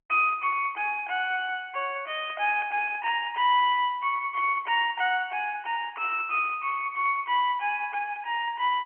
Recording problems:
phone line; 300 Hz to 3.2 kHz, G.711

